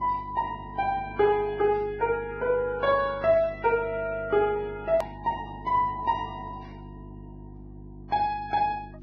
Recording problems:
lossy codec; Vorbis, log-spectral distance 2 dB, nothing above 13.1 kHz
electrical hum; 50 Hz, harmonics up to 350 Hz, SNR 17 dB
click at an edit; at 5 s

